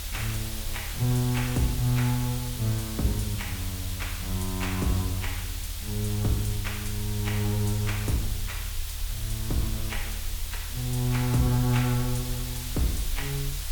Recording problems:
background hiss; slope +1 dB per octave, SNR 7 dB
low-frequency rumble; below 76 Hz, SNR 9 dB

